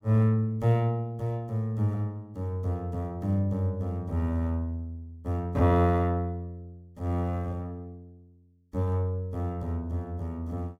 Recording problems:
none

